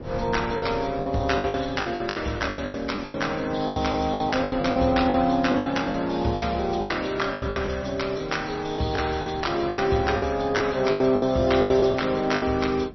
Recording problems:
lossy compression; MP3, log-spectral distance 4 dB, nothing above 5.8 kHz
wind on the microphone; below 320 Hz, SNR 17 dB
packet loss; 16% of the sound replaced, filled with the last packet

